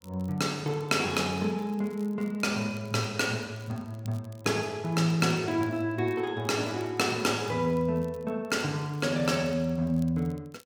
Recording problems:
crackle; vinyl, SNR 29 dB

